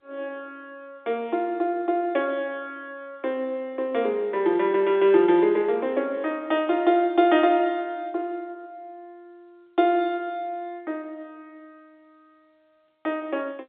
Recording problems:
phone line; 260 Hz to 3.9 kHz, G.711

